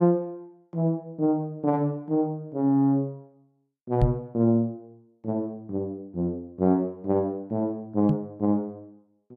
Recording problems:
microphone bump; at 4 s and at 8 s; peak +5 dB vs average level

